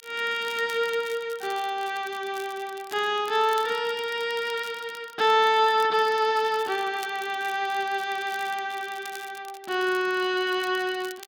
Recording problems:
crackling; vinyl, SNR 21 dB

